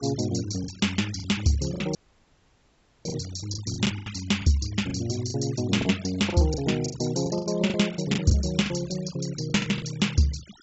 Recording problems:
treble cut off; nothing above 7.7 kHz
noise reduction artefacts; signal-to-artefact ratio 17 dB
lost packets; 12% of the sound replaced, filled with the last packet
audio cutting out; at 2 s for 1 s

